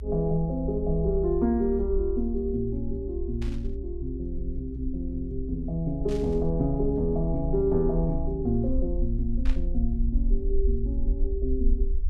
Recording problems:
low-frequency rumble; below 60 Hz, SNR 4 dB
static burst; at 3.5 s, at 6 s and at 9.5 s; peak -11 dB vs average level

